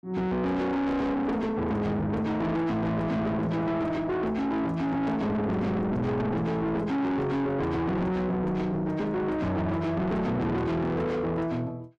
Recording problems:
distortion; soft clipping, signal-to-distortion ratio 6 dB

